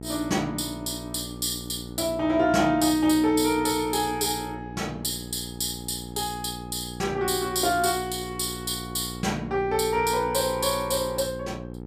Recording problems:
hum; 60 Hz, harmonics up to 900 Hz, SNR 12 dB

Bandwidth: 15 kHz